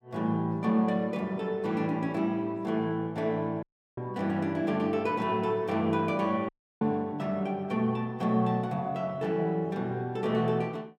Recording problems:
audio cutting out; at 3.5 s and at 6.5 s

